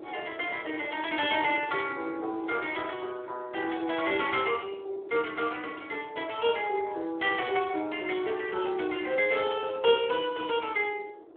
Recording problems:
phone line; 280 Hz to 3.5 kHz, Speex
wind noise; below 540 Hz, SNR 20 dB

